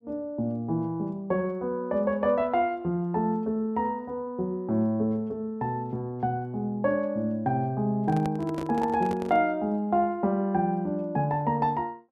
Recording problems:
handling noise; from 8 to 9.5 s; peak -4 dB vs average level

